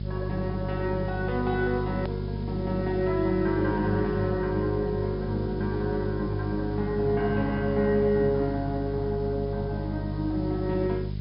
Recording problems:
treble missing; nothing above 5.5 kHz
hum; 50 Hz, harmonics up to 400 Hz, SNR 5 dB
hiss; SNR 26 dB
hard cut with a click; at 2 s

